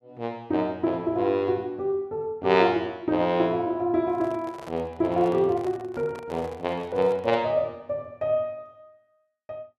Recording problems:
handling noise; from 4 to 7.5 s; peak -10 dB vs average level

